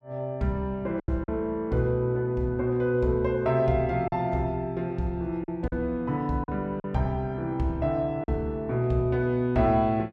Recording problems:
lost packets; 4% of the sound replaced, filled with silence

